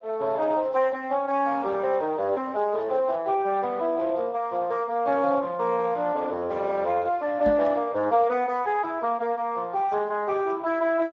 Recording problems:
lossy compression; Speex, log-spectral distance 2 dB
knock on the microphone; at 7.5 s; peak -2 dB vs average level

